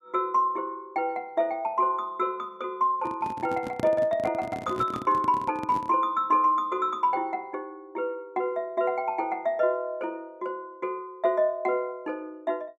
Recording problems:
microphone handling noise; from 3 to 6 s; peak -3 dB vs average level

